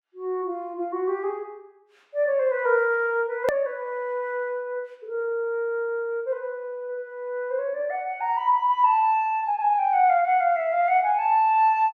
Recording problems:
click at an edit; at 3.5 s

